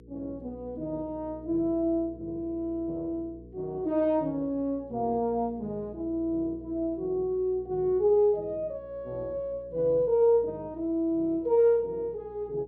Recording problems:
hum; 60 Hz, harmonics up to 480 Hz, SNR 21 dB

